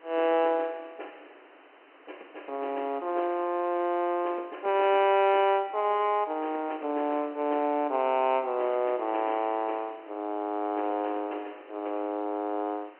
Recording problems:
phone line; 260 Hz to 3.1 kHz, G.711
background hiss; SNR 26 dB

